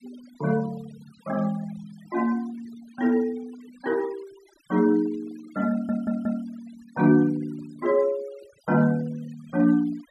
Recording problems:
noise reduction artefacts; signal-to-artefact ratio 23 dB
audio stuttering; at 5.5 s

